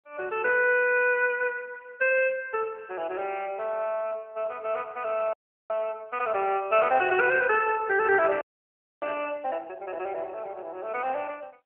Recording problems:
telephone audio; 340 Hz to 3.1 kHz, AMR-NB
frozen audio; at 5.5 s and at 8.5 s for 0.5 s

